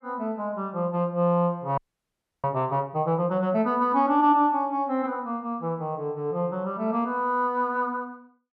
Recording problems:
audio freezing; at 2 s for 0.5 s

